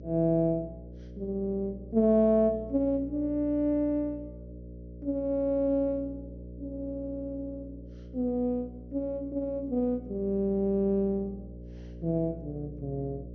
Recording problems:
low-pass filter; nothing above 6.7 kHz
electrical hum; 60 Hz, harmonics up to 600 Hz, SNR 15 dB

